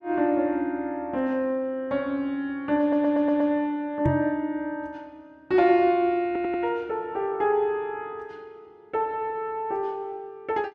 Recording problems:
stutter; at 3 s and at 6.5 s
microphone bump; at 4 s; peak +3 dB vs average level

